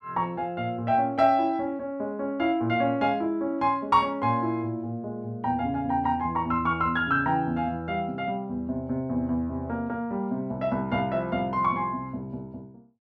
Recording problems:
none

